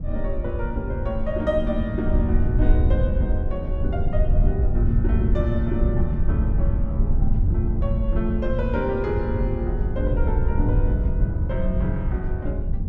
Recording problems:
wind noise; below 90 Hz, SNR -4 dB

